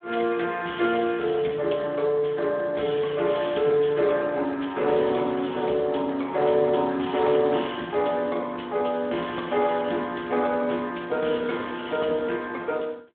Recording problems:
telephone audio; 220 Hz to 3.6 kHz, Speex

